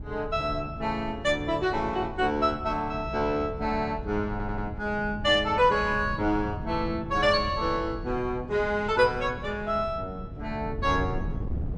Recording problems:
wind on the microphone; below 160 Hz, SNR 11 dB
stutter; at 4.5 s

